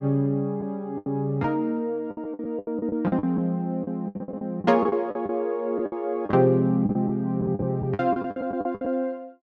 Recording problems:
lost packets; 15% of the sound replaced, filled with the last packet

